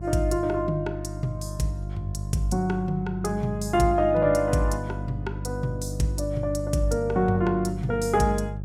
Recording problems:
hum; 50 Hz, harmonics up to 400 Hz, SNR 8 dB

